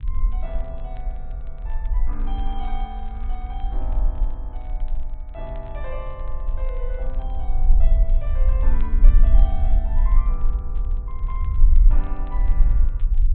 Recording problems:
low-pass filter; nothing above 4 kHz
rumble; below 42 Hz, strongest tone 22 Hz, SNR -14 dB
crackling; vinyl, SNR 23 dB

